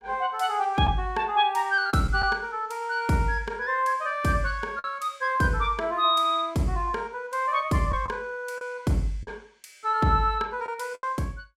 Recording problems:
lost packets; 3% of the sound replaced, filled with the last packet

